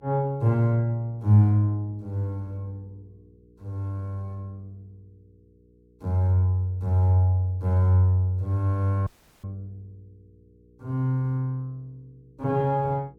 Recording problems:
hum; 60 Hz, harmonics up to 480 Hz, SNR 33 dB
dropout; at 9 s

